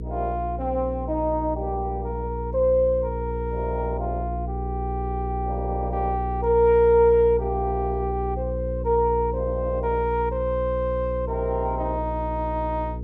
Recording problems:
hum; 60 Hz, harmonics up to 480 Hz, SNR 7 dB

